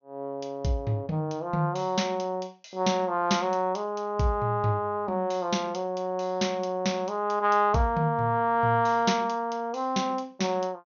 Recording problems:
treble missing; nothing above 6.5 kHz

